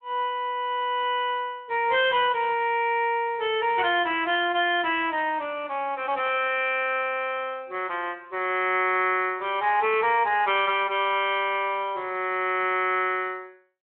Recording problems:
telephone audio; 260 Hz to 3.3 kHz, Speex

